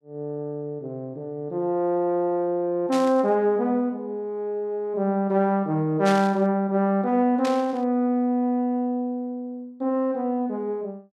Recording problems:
static burst; at 3 s, at 6 s and at 7.5 s; peak -4 dB vs average level

